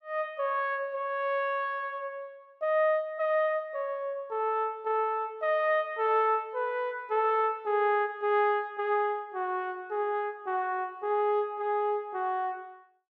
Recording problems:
none

